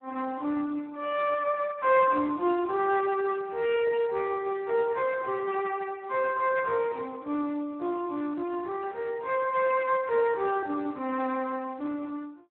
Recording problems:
phone line; 280 Hz to 2.7 kHz, Speex

